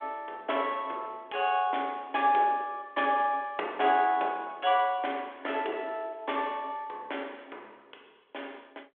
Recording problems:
phone line; 300 Hz to 3.5 kHz, G.726

